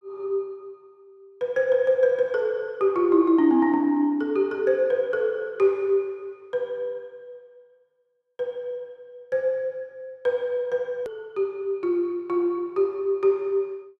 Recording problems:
click at an edit; at 11 s

